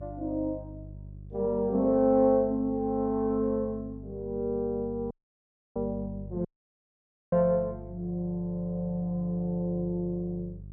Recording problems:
electrical hum; 50 Hz, harmonics up to 400 Hz, SNR 15 dB
audio cutting out; at 5 s for 0.5 s and at 6.5 s for 1 s

